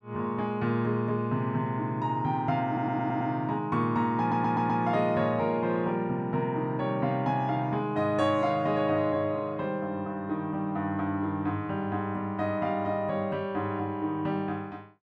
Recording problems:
audio stuttering; at 2.5 s and at 4 s

